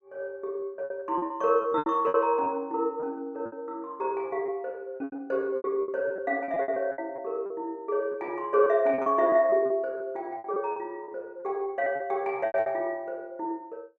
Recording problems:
lost packets; 13% of the sound replaced, filled with repeated pitch periods

